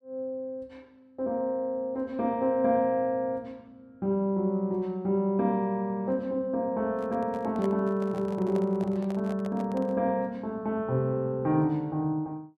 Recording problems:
handling noise; from 7 to 10 s; peak -5 dB vs average level

